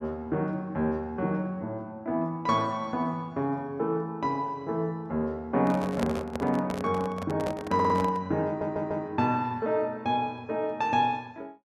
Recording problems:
microphone handling noise; from 5.5 to 8 s; peak +1 dB vs average level
stutter; at 7.5 s and at 8.5 s

